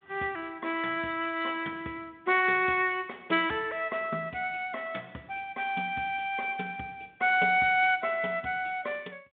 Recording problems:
phone line; 150 Hz to 3.7 kHz, G.726

